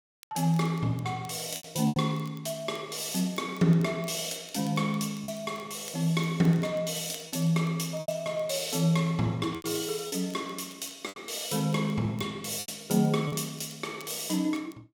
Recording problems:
crackling; vinyl, SNR 25 dB
packet loss; 4% of the sound replaced, filled with repeated pitch periods

